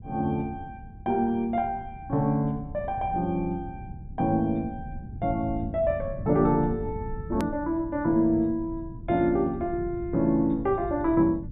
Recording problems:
low-pass filter; nothing above 4 kHz
low-frequency rumble; below 150 Hz, SNR 13 dB
edit click; at 7.5 s

